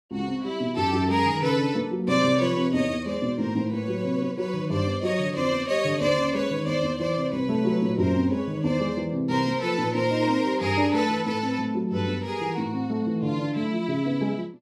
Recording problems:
none

